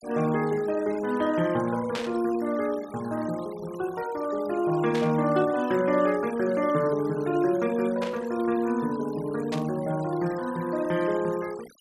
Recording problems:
denoising artefacts; signal-to-artefact ratio 19 dB
burst of static; 4 times, first at 2 s; peak -3 dB vs average level

